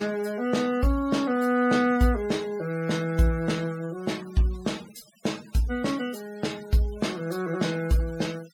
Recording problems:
denoising artefacts; signal-to-artefact ratio 20 dB

